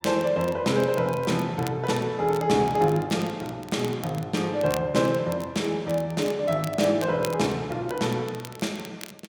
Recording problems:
crackle; vinyl, SNR 19 dB

